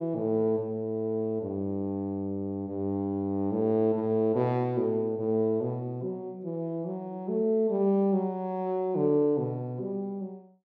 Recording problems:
none

